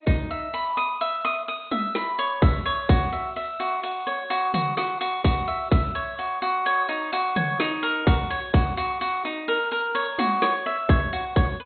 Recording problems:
codec artefacts; MP2, log-spectral distance 5 dB, nothing above 3.9 kHz

